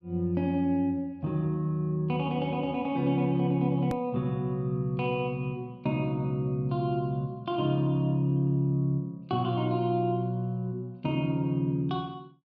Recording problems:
edit click; at 4 s

